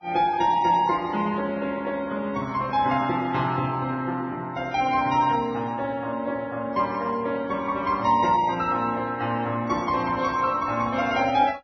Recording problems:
lossy compression; Vorbis, log-spectral distance 3 dB, nothing above 5.8 kHz

